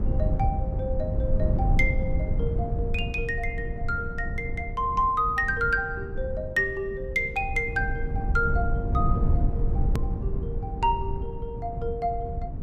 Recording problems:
low-frequency rumble; below 110 Hz, SNR 1 dB
click at an edit; at 10 s

